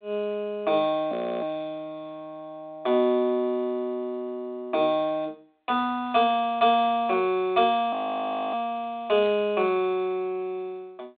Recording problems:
telephone audio; 220 Hz to 3.7 kHz, G.726
audio freezing; at 1 s and at 8 s for 0.5 s

